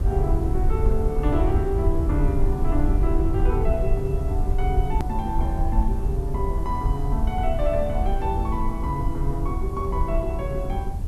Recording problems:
background hiss; SNR 26 dB
low-frequency rumble; below 72 Hz, SNR -2 dB
edit click; at 5 s

